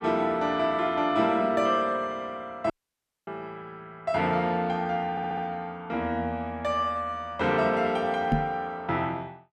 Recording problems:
dropout; at 2.5 s for 0.5 s
stutter; at 5 s
knock on the microphone; at 8.5 s; peak +6 dB vs average level

